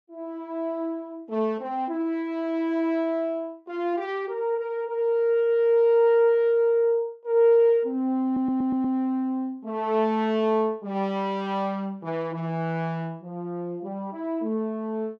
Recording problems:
audio stuttering; at 8.5 s

